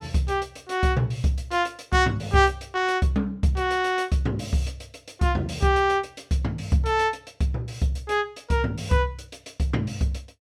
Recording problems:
none

